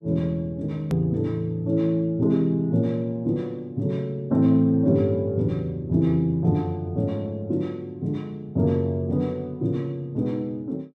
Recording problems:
edit click; at 1 s

